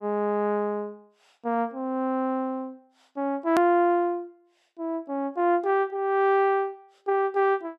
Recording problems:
click at an edit; at 3.5 s

